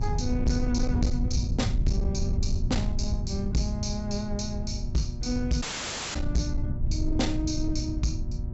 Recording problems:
treble cut off; nothing above 7.7 kHz
distortion; soft clipping, signal-to-distortion ratio 11 dB
mains hum; 60 Hz, harmonics up to 960 Hz, SNR 11 dB
low-frequency rumble; below 98 Hz, SNR 0 dB
dropout; at 5.5 s for 0.5 s

